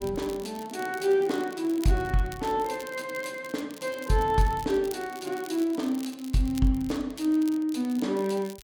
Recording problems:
crackling; vinyl, SNR 19 dB

